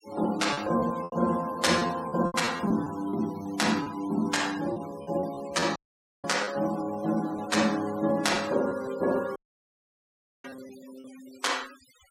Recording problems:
noise reduction artefacts; signal-to-artefact ratio 18 dB
lost packets; 9% of the sound replaced, filled with repeated pitch periods
audio cutting out; at 6 s and at 9.5 s for 1 s

